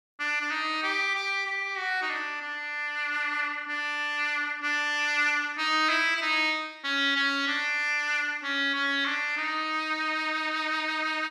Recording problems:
none

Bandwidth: 14.5 kHz